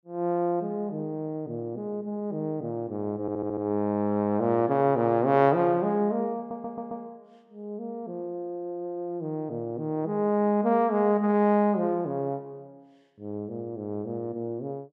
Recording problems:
audio stuttering; at 3 s and at 6.5 s

